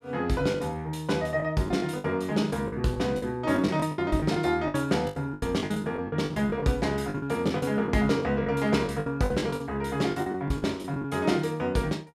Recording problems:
lost packets; 13% of the sound replaced, filled with the last packet

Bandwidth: 14.5 kHz